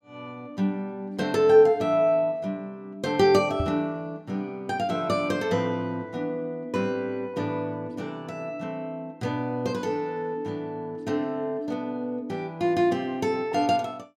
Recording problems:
microphone thump; at 3.5 s; peak +1 dB vs average level

